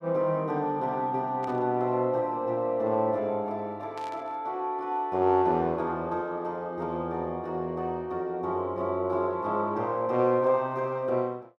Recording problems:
burst of static; at 1.5 s and at 4 s; peak -14 dB vs average level

